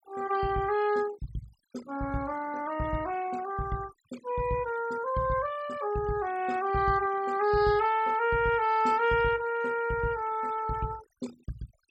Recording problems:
noise reduction artefacts; signal-to-artefact ratio 19 dB

